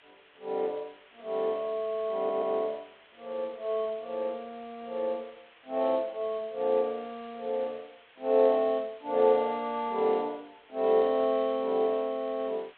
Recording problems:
phone line; 300 Hz to 4 kHz, G.726
background hiss; SNR 27 dB
audio stuttering; at 2 s

